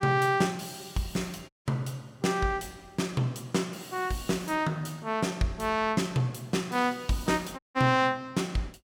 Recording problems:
dropout; at 1.5 s and at 7.5 s

